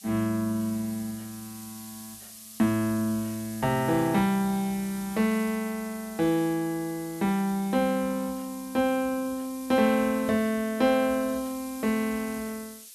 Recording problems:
hiss; SNR 16 dB

